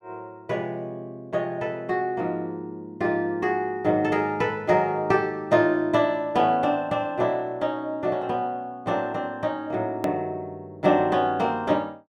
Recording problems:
edit click; at 10 s

